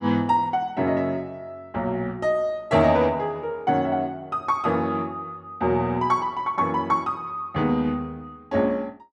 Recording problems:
none

